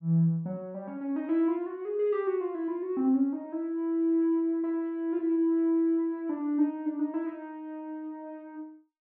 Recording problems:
none

